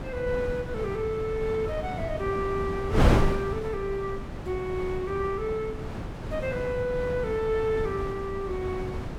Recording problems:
wind on the microphone; below 360 Hz, SNR 2 dB

